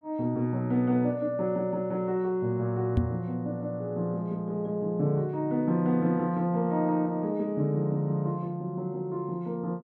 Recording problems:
microphone thump; at 3 s; peak +6 dB vs average level

